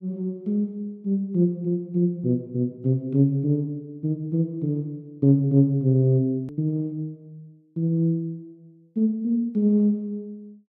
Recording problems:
hard cut with a click; at 6.5 s

